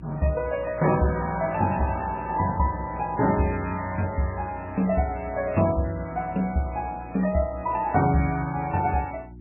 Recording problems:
codec artefacts; MP3, then MP3, log-spectral distance 3 dB, nothing above 2.5 kHz
electrical hum; 60 Hz, harmonics up to 360 Hz, SNR 17 dB

